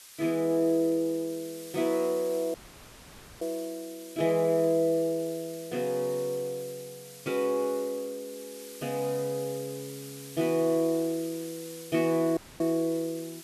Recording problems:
background hiss; slope +3 dB per octave, SNR 16 dB
dropout; at 2.5 s for 1 s and at 12 s

